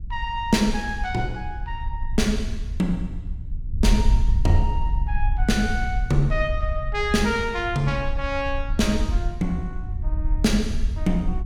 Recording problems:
wind noise; below 64 Hz, SNR 3 dB

